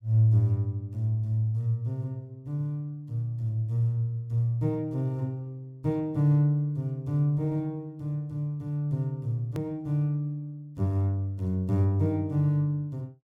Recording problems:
edit click; at 9.5 s

